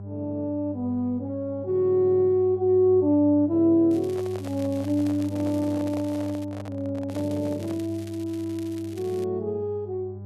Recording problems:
hum; 50 Hz, harmonics up to 800 Hz, SNR 13 dB
crackle; from 4 to 6.5 s and from 7 to 9 s; loose cable, SNR 24 dB
handling noise; from 4 to 8 s; peak -10 dB vs average level

